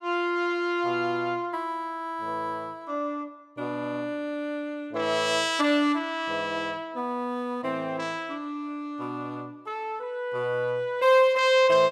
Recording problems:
none

